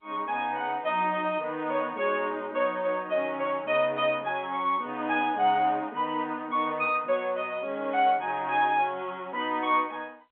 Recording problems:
phone line; 280 Hz to 3.7 kHz, G.711

